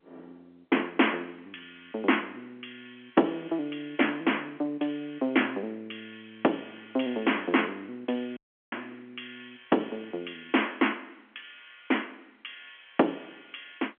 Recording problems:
phone line; 220 Hz to 3.4 kHz, G.711
dropout; at 8.5 s

